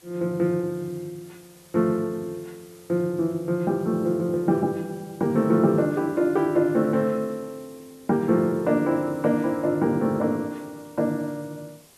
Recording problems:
background hiss; SNR 27 dB

